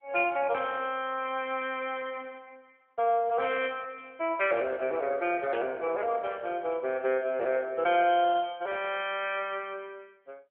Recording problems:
telephone audio; 300 Hz to 3.3 kHz, AMR-NB
burst of static; at 5.5 s; peak -7 dB vs average level

